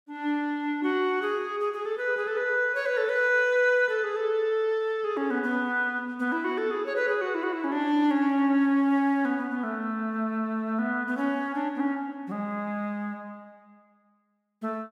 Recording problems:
none

